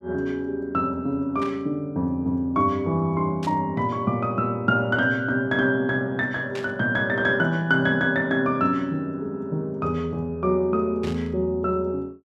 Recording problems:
static burst; 4 times, first at 1.5 s; peak -9 dB vs average level

